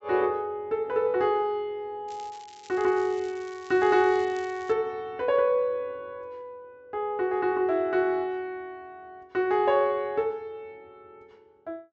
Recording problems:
treble missing; nothing above 7.8 kHz
crackling; from 2 to 4.5 s; loose cable, SNR 24 dB

